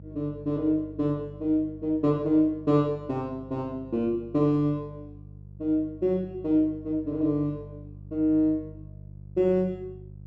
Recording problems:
electrical hum; 50 Hz, harmonics up to 400 Hz, SNR 18 dB

